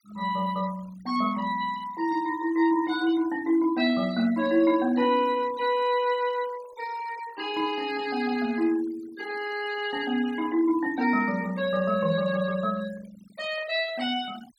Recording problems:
denoising artefacts; signal-to-artefact ratio 19 dB

